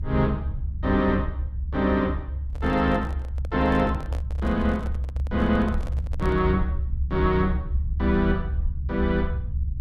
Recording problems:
rumble; below 72 Hz, strongest tone 68 Hz, SNR 4 dB
handling noise; from 2.5 to 6.5 s; peak -9 dB vs average level

